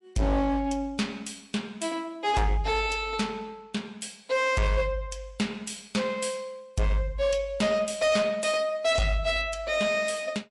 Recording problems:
codec artefacts; MP3, log-spectral distance 2 dB, nothing above 11 kHz
distortion; hard clipping, signal-to-distortion ratio 10 dB

